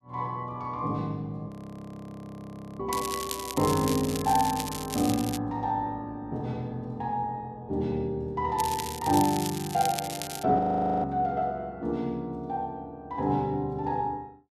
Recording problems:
audio freezing; at 1.5 s for 1.5 s and at 11 s
crackle; from 3 to 5.5 s and from 8.5 to 10 s; loose cable, SNR 7 dB

